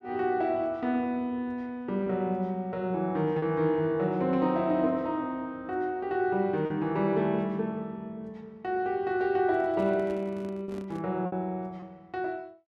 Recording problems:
lost packets; 1.8% of the sound replaced, filled with repeated pitch periods
microphone handling noise; from 9.5 to 11 s; peak -10 dB vs average level

